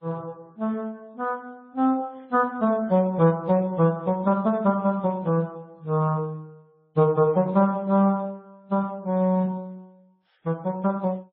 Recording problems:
codec artefacts; Speex, then MP3, log-spectral distance 2 dB

